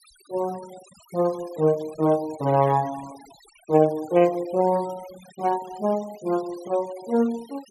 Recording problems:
noise reduction artefacts; signal-to-artefact ratio 22 dB

